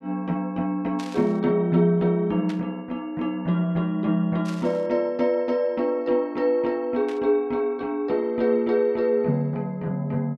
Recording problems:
burst of static; 4 times, first at 1 s; peak -11 dB vs average level

